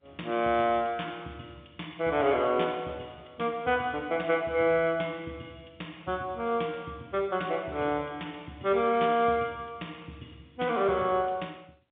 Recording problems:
telephone audio; 170 Hz to 3.6 kHz, G.711

